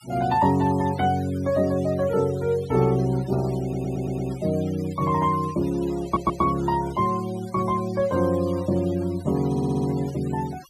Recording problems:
noise reduction artefacts; signal-to-artefact ratio 20 dB
stutter; at 3.5 s, at 6 s and at 9.5 s

